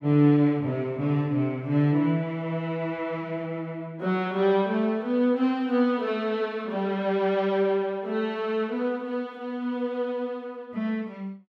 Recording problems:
none

